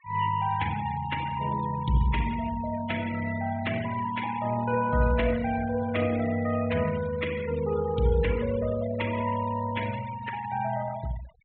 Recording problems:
low-pass filter; nothing above 4 kHz
noise reduction artefacts; signal-to-artefact ratio 15 dB

